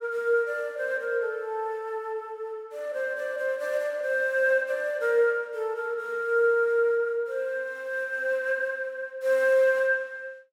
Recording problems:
none

